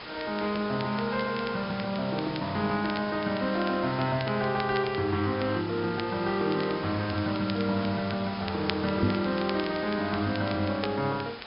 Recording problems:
treble cut off; nothing above 5.5 kHz
background hiss; SNR 11 dB
crackle; vinyl, SNR 15 dB
microphone thump; at 9 s; peak +4 dB vs average level

